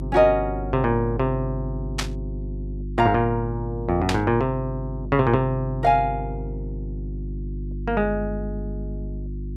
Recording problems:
electrical hum; 50 Hz, harmonics up to 350 Hz, SNR 9 dB
burst of static; at 2 s and at 4 s; peak +2 dB vs average level

